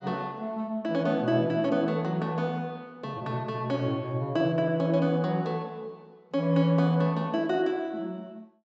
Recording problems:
treble cut off; nothing above 8 kHz

